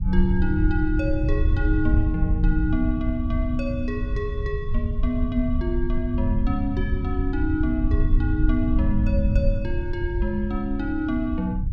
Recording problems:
low-frequency rumble; below 84 Hz, SNR -1 dB

